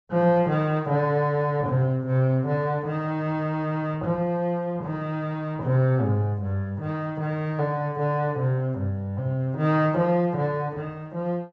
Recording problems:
treble cut off; nothing above 8 kHz

